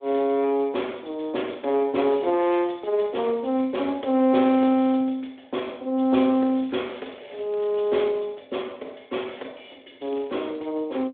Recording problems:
phone line; 220 Hz to 3.5 kHz, Speex
crackling; from 6 to 8 s and at 10 s; loose cable, SNR 27 dB

